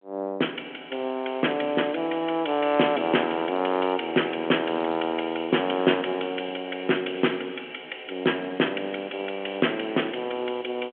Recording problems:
phone line; 220 Hz to 3.4 kHz, G.726

